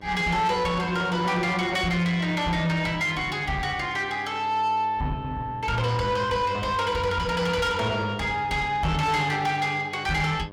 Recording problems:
distorted audio; soft clipping, signal-to-distortion ratio 11 dB
hum; 50 Hz, harmonics up to 2.2 kHz, SNR 20 dB

